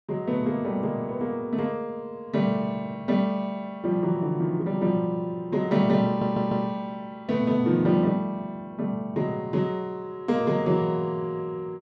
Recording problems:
audio stuttering; at 6 s

